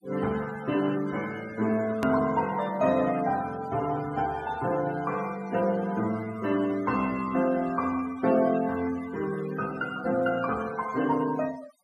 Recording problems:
denoising artefacts; signal-to-artefact ratio 16 dB
hard cut with a click; at 2 s

